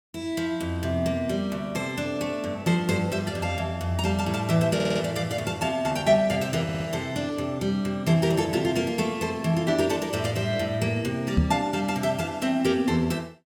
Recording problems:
stutter; at 5 s and at 6.5 s
knock on the microphone; at 11 s; peak +7 dB vs average level

